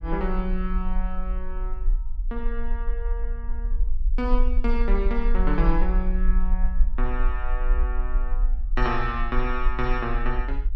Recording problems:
rumble; below 40 Hz, strongest tone 22 Hz, SNR -2 dB

